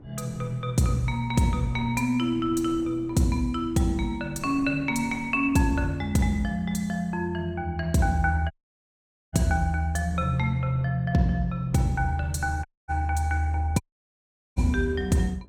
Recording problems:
wind noise; below 280 Hz, SNR 20 dB
audio cutting out; at 8.5 s for 1 s, at 13 s and at 14 s for 1 s

